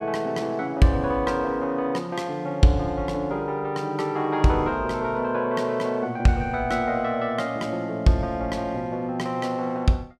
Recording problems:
none

